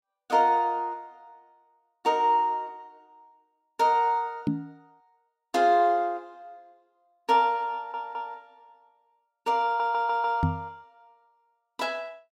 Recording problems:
knock on the microphone; at 4.5 s and at 10 s; peak +3 dB vs average level
stutter; at 7.5 s and at 9.5 s

